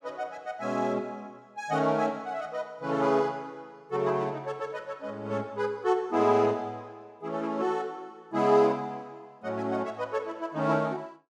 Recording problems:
none

